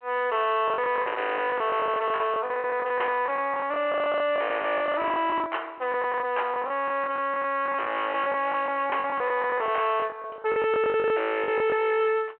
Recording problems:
telephone audio; 300 Hz to 3.3 kHz, G.726
distorted audio; hard clipping, signal-to-distortion ratio 7 dB
packet loss; 17% of the sound replaced, filled with the last packet

